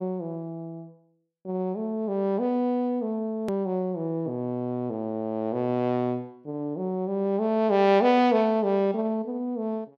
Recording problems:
click at an edit; at 3.5 s

